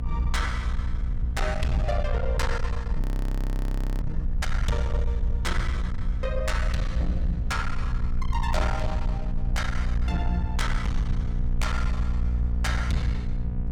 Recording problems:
distorted audio; soft clipping, signal-to-distortion ratio 11 dB
electrical hum; 60 Hz, harmonics up to 960 Hz, SNR 5 dB
low-frequency rumble; below 62 Hz, SNR -2 dB
wind noise; below 120 Hz, SNR 9 dB
frozen audio; at 3 s for 1 s

